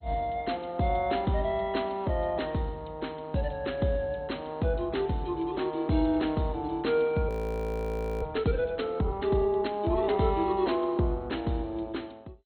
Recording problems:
lossy codec; MP2, log-spectral distance 3 dB
audio freezing; at 7.5 s for 1 s

